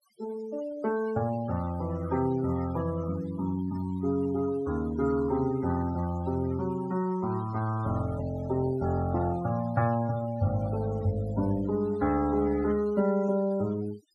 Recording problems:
noise reduction artefacts; signal-to-artefact ratio 18 dB

